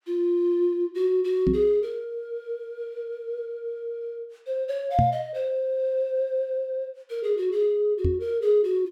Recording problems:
microphone thump; at 1.5 s, at 5 s and at 8 s; peak +6 dB vs average level

